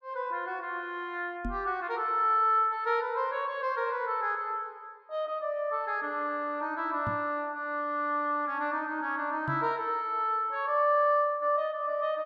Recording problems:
microphone bump; at 1.5 s, at 7 s and at 9.5 s; peak -2 dB vs average level

